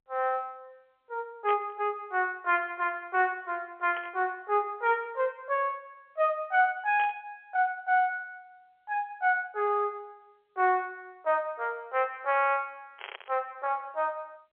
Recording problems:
phone line; 340 Hz to 3.3 kHz, G.711
burst of static; 4 times, first at 1.5 s; peak -5 dB vs average level

